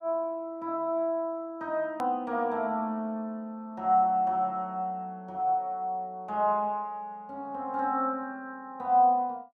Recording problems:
edit click; at 2 s

